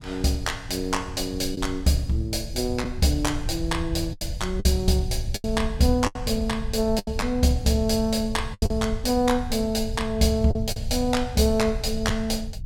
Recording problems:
rumble; below 88 Hz, SNR 9 dB
lost packets; 5% of the sound replaced, filled with the last packet

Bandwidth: 17.5 kHz